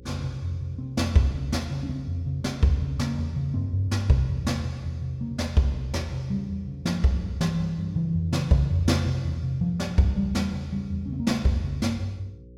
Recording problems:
mains hum; 60 Hz, harmonics up to 540 Hz, SNR 21 dB

